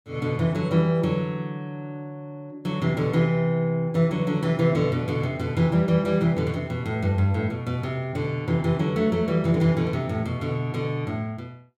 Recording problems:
none

